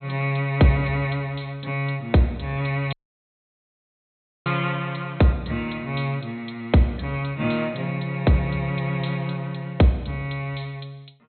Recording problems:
treble missing; nothing above 4.1 kHz
audio cutting out; at 3 s for 1.5 s

